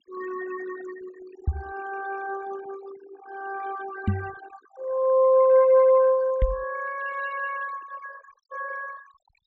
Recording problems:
treble cut off; nothing above 8 kHz
denoising artefacts; signal-to-artefact ratio 20 dB
microphone thump; at 1.5 s, at 4 s and at 6.5 s; peak +3 dB vs average level

